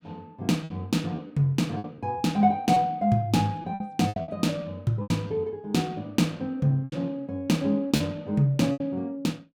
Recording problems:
packet loss; 8% of the sound replaced, filled with repeated pitch periods

